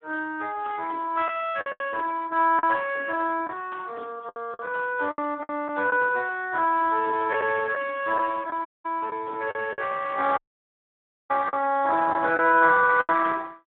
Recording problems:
telephone audio; 260 Hz to 3.4 kHz, Speex
packet loss; 7% of the sound replaced, filled with the last packet
audio cutting out; at 8.5 s and at 10 s for 1 s

